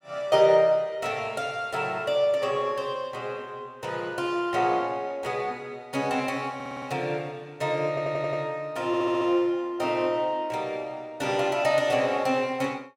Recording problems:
audio stuttering; at 6.5 s, at 8 s and at 9 s

